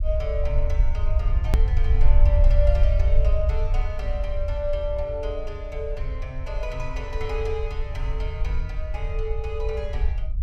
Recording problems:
low-frequency rumble; below 62 Hz, SNR -6 dB
edit click; at 1.5 s

